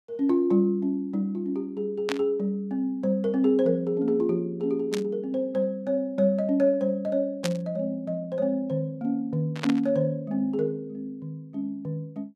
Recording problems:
static burst; 4 times, first at 2 s; peak 0 dB vs average level

